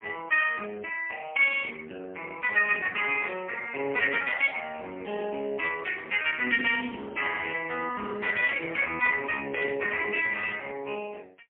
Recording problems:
phone line; 220 Hz to 3.3 kHz, AMR-NB, then MP3

